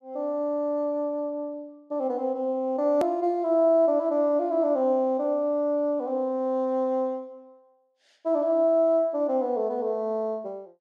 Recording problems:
hard cut with a click; at 3 s

